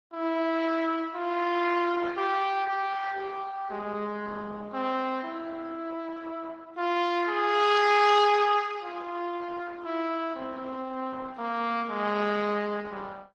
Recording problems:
codec artefacts; AAC, then Opus, log-spectral distance 4 dB, nothing above 11.6 kHz

